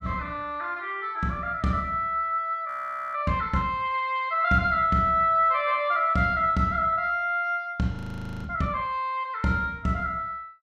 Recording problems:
audio freezing; at 2.5 s and at 8 s

